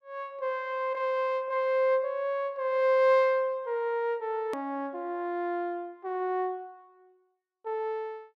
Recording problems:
edit click; at 4.5 s

